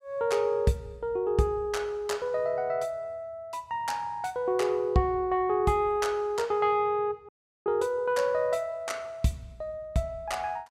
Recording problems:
audio cutting out; at 7.5 s

